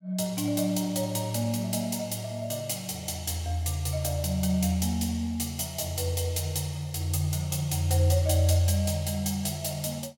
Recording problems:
none

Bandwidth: 17.5 kHz